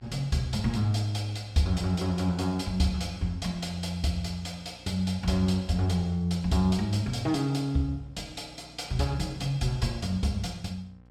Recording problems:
hum; 60 Hz, harmonics up to 1.6 kHz, SNR 26 dB

